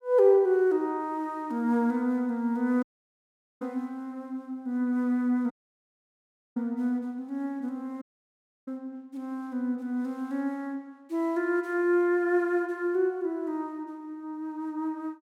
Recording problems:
audio cutting out; at 3 s for 1 s, at 5.5 s for 1 s and at 8 s for 0.5 s

